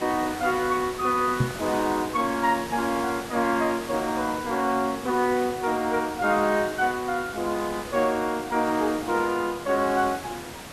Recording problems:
background hiss; slope -4 dB per octave, SNR 12 dB
microphone thump; at 1.5 s; peak +5 dB vs average level

